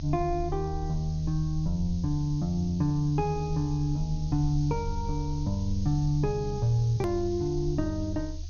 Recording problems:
low-pass filter; nothing above 6.6 kHz
background hiss; SNR 21 dB
rumble; below 78 Hz, SNR 9 dB
click at an edit; at 7 s

